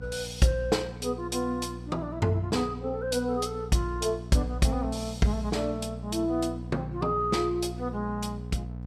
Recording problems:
hum; 60 Hz, harmonics up to 780 Hz, SNR 10 dB

